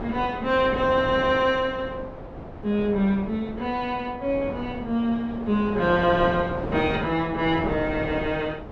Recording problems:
wind noise; below 660 Hz, SNR 10 dB

